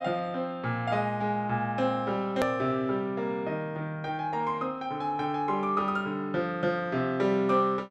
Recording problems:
click at an edit; at 2.5 s

